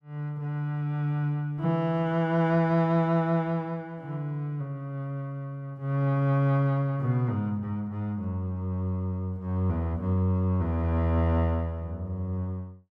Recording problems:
none

